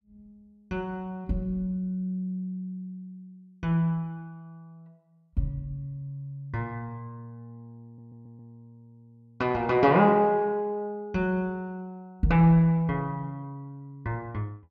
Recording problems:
stutter; at 8 s

